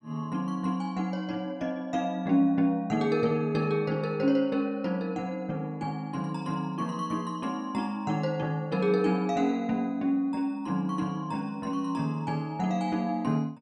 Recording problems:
none

